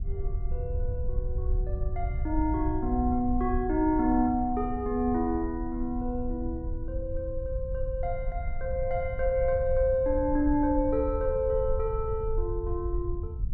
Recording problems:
low-frequency rumble; below 68 Hz, SNR 6 dB

